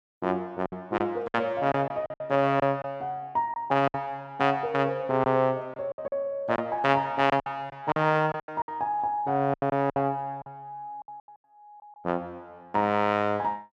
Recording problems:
packet loss; 10% of the sound replaced, filled with silence

